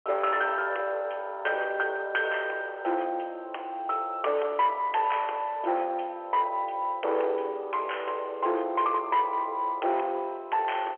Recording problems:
phone line; 320 Hz to 3.3 kHz, G.711
distorted audio; soft clipping, signal-to-distortion ratio 12 dB

